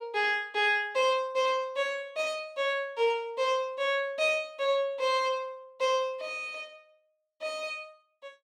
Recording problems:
none

